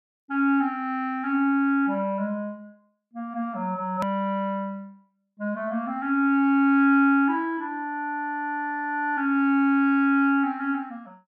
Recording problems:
edit click; at 4 s

